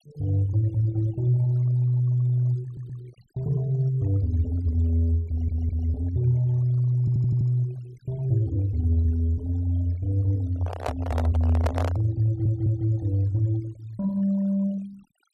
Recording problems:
denoising artefacts; signal-to-artefact ratio 26 dB
stutter; 4 times, first at 2.5 s
microphone handling noise; from 11 to 12 s; peak -1 dB vs average level

